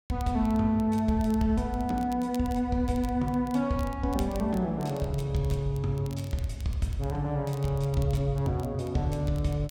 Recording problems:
crackling; vinyl, SNR 23 dB

